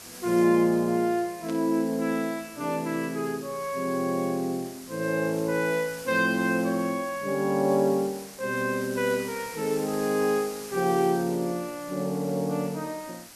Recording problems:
background hiss; slope -1 dB per octave, SNR 16 dB
burst of static; at 1.5 s; peak -13 dB vs average level

